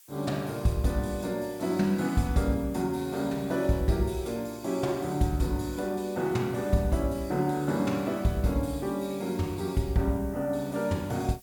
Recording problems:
background hiss; slope +4 dB per octave, SNR 23 dB

